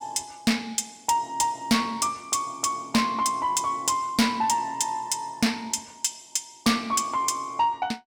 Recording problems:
distorted audio; soft clipping, signal-to-distortion ratio 7 dB

